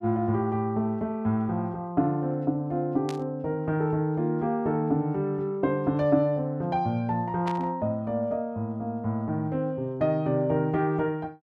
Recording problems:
static burst; at 3 s and at 7.5 s; peak -8 dB vs average level

